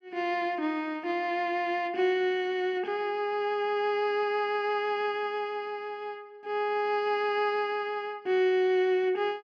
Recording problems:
none

